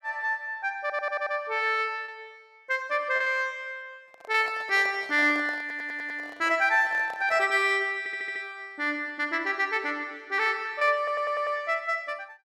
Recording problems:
lost packets; 2% of the sound replaced, filled with repeated pitch periods
stutter; 4 times, first at 1 s
microphone handling noise; from 4 to 7.5 s; peak -11 dB vs average level

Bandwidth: 14.5 kHz